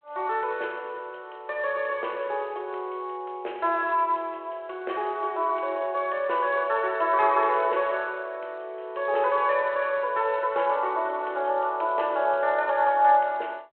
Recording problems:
telephone audio; 320 Hz to 3.3 kHz, G.726

